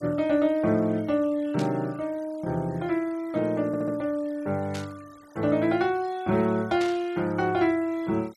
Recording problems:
noise reduction artefacts; signal-to-artefact ratio 26 dB
static burst; at 1.5 s, at 4.5 s and at 7 s; peak -7 dB vs average level
audio stuttering; at 3.5 s

